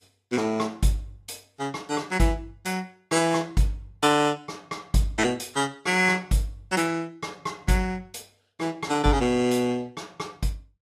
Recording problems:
codec artefacts; Vorbis, log-spectral distance 3 dB, nothing above 14.7 kHz

